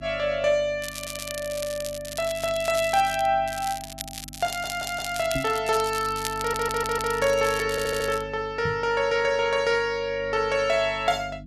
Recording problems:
electrical hum; 50 Hz, harmonics up to 300 Hz, SNR 18 dB
crackle; from 1 to 3.5 s and from 3.5 to 8 s; loose cable, SNR 11 dB
stutter; 4 times, first at 1 s
knock on the microphone; at 5.5 s and at 8.5 s; peak -2 dB vs average level

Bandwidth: 12.5 kHz